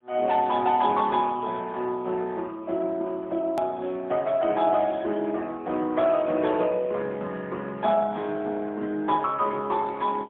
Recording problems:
phone line; 220 Hz to 3.8 kHz, AMR-NB, then MP3
hard cut with a click; at 3.5 s

